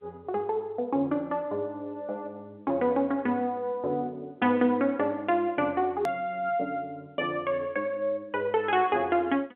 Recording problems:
telephone audio; 190 Hz to 3.5 kHz, G.711
hard cut with a click; at 6 s

